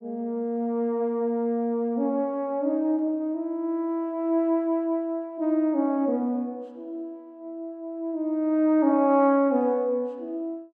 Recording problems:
none

